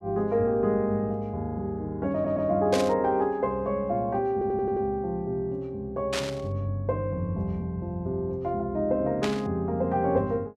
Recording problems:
audio stuttering; at 2 s and at 4.5 s
burst of static; at 2.5 s, at 6 s and at 9 s; peak +1 dB vs average level

